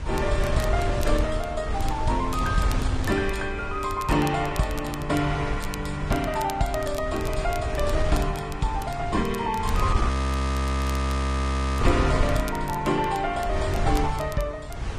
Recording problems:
codec artefacts; Vorbis, log-spectral distance 2 dB
wind noise; below 150 Hz, SNR 2 dB
crackle; vinyl, SNR 17 dB
audio freezing; at 10 s for 1.5 s

